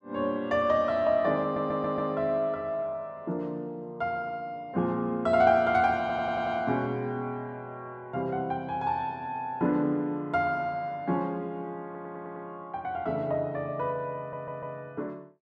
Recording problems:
stutter; 4 times, first at 1.5 s

